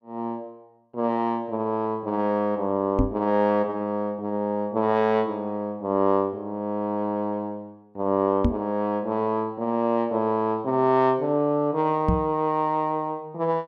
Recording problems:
microphone thump; at 3 s, at 8.5 s and at 12 s; peak +6 dB vs average level

